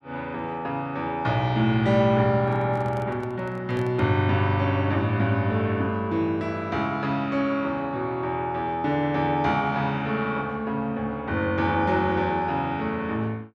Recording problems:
microphone handling noise; from 2.5 to 4 s; peak -11 dB vs average level

